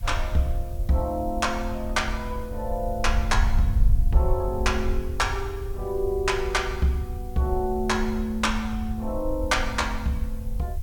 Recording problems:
background hiss; slope +1 dB per octave, SNR 25 dB
rumble; below 66 Hz, SNR 4 dB

